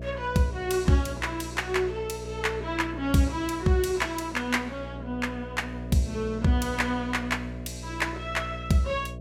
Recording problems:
hum; 60 Hz, harmonics up to 660 Hz, SNR 11 dB

